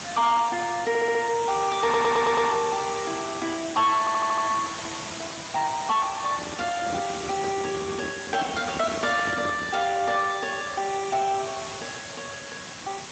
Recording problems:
lossy compression; Speex, log-spectral distance 16 dB, nothing above 7.8 kHz
distortion; soft clipping, signal-to-distortion ratio 10 dB
background hiss; slope -2 dB per octave, SNR 10 dB
stutter; at 1 s, at 2 s and at 4 s
handling noise; from 6.5 to 10 s; peak -5 dB vs average level

